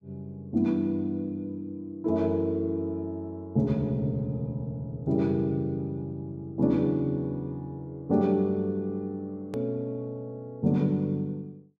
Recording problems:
click at an edit; at 9.5 s

